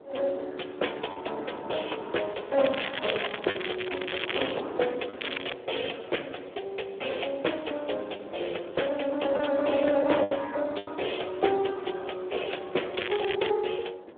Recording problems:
telephone audio; 280 Hz to 3.6 kHz, Speex
wind noise; below 650 Hz, SNR 15 dB
packet loss; 2% of the sound replaced, filled with the last packet
crackling; from 2.5 to 4.5 s, at 5 s and at 13 s; loose cable, SNR 5 dB

